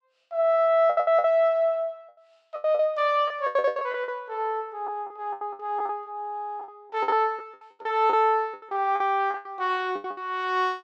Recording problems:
lost packets; 15% of the sound replaced, filled with the last packet

